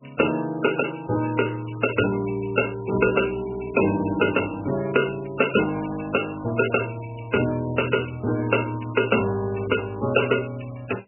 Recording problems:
lossy codec; MP3, log-spectral distance 11 dB, nothing above 2.7 kHz

